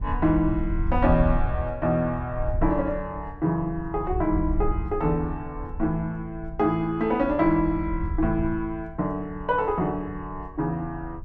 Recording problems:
wind noise; below 76 Hz, SNR 7 dB

